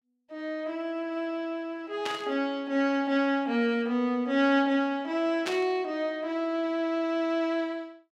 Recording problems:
burst of static; at 2 s and at 5.5 s; peak -1 dB vs average level

